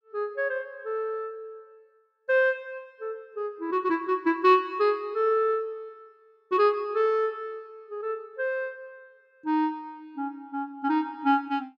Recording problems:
none

